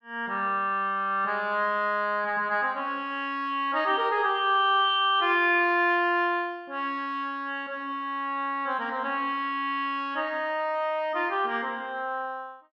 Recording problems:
none

